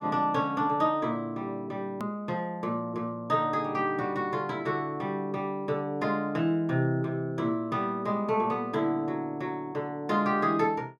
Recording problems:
edit click; at 2 s

